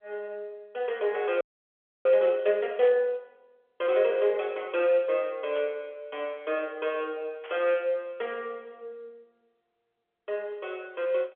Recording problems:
phone line; 320 Hz to 3.4 kHz, G.711
audio freezing; at 1.5 s for 0.5 s
static burst; at 3 s, at 5.5 s and at 7.5 s; peak -12 dB vs average level

